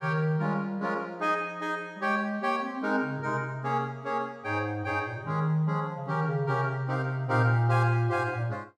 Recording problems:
none

